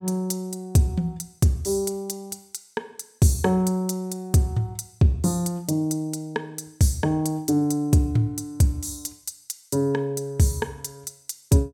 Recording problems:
none

